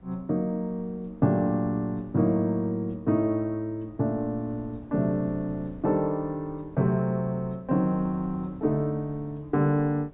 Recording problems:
treble cut off; nothing above 4 kHz
wind noise; below 260 Hz, SNR 22 dB

